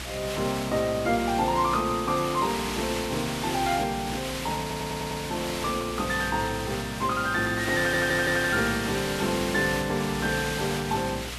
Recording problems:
mains hum; 60 Hz, harmonics up to 540 Hz, SNR 16 dB
background hiss; SNR 7 dB
stutter; at 4.5 s and at 8 s

